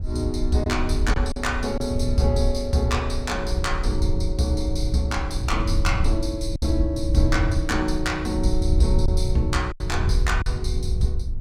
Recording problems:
wind noise; below 80 Hz, SNR 1 dB
lost packets; 3% of the sound replaced, filled with silence

